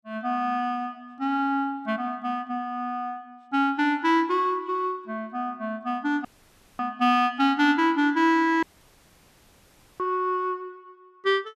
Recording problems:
audio cutting out; at 6.5 s for 0.5 s and at 8.5 s for 1.5 s

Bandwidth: 14 kHz